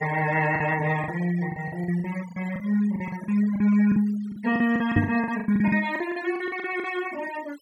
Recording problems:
noise reduction artefacts; signal-to-artefact ratio 17 dB
lost packets; 15% of the sound replaced, filled with the last packet
microphone thump; at 5 s; peak +6 dB vs average level

